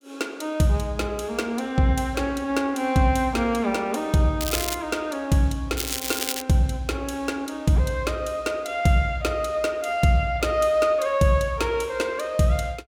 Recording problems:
crackle; at 4.5 s and at 6 s; loose cable, SNR 4 dB

